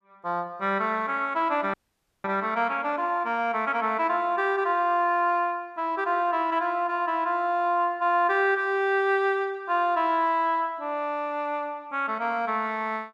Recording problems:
dropout; at 1.5 s for 0.5 s

